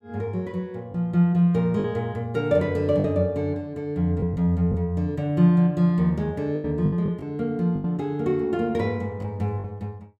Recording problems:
lost packets; 5% of the sound replaced, filled with the last packet

